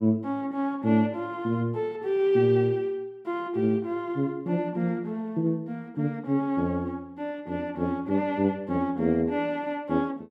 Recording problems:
none

